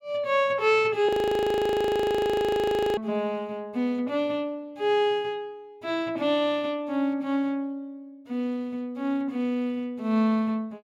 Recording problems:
frozen audio; at 1 s for 2 s

